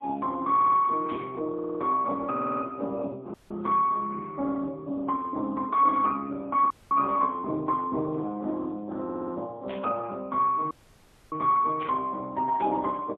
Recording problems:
phone line; 240 Hz to 2.2 kHz, AMR-NB, then MP3
audio stuttering; 4 times, first at 0.5 s
burst of static; at 1 s, at 9.5 s and at 12 s; peak -10 dB vs average level
audio cutting out; at 3.5 s, at 6.5 s and at 11 s for 0.5 s

